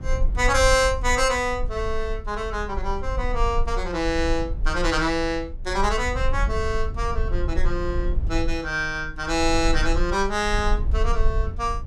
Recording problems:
low-frequency rumble; below 50 Hz, strongest tone 20 Hz, SNR 5 dB

